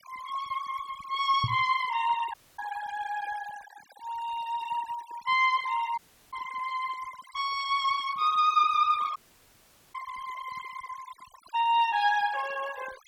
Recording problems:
noise reduction artefacts; signal-to-artefact ratio 17 dB
knock on the microphone; at 1.5 s and at 6.5 s; peak +2 dB vs average level
dropout; at 2.5 s, at 6 s and at 9 s for 1 s

